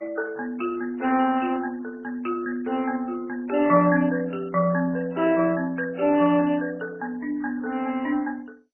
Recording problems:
lossy codec; MP3, then MP2, log-spectral distance 3 dB, nothing above 2.9 kHz

